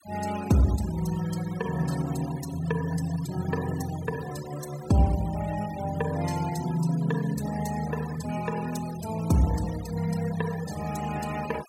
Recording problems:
noise reduction artefacts; signal-to-artefact ratio 14 dB

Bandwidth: 16 kHz